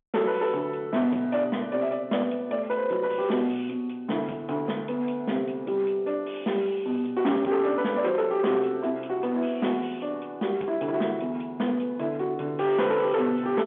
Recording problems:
telephone audio; 170 Hz to 3.5 kHz, G.711
distortion; hard clipping, uneven, signal-to-distortion ratio 11 dB

